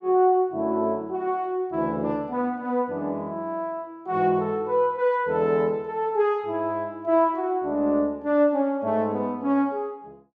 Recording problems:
none

